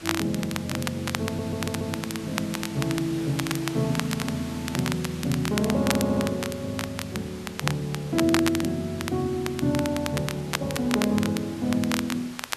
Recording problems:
hiss; slope -2 dB per octave, SNR 15 dB
crackle; vinyl, SNR 6 dB
stutter; at 1.5 s and at 6 s

